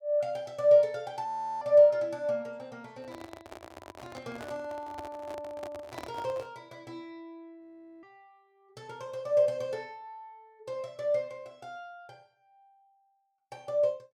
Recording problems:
audio freezing; at 1.5 s and at 7.5 s
handling noise; from 3 to 6.5 s; peak -7 dB vs average level

